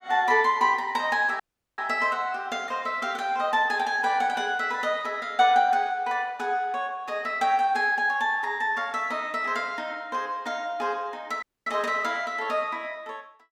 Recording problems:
dropout; at 1.5 s and at 11 s

